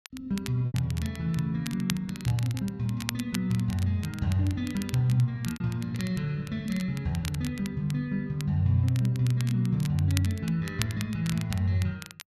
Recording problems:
crackling; vinyl, SNR 14 dB
packet loss; 1.7% of the sound replaced, filled with repeated pitch periods

